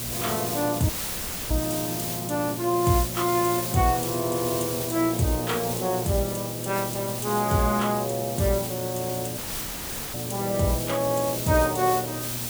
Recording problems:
hum; 60 Hz, harmonics up to 1.6 kHz, SNR 11 dB
hiss; slope 0 dB per octave, SNR 5 dB
audio cutting out; at 1 s for 0.5 s and at 9.5 s for 1 s

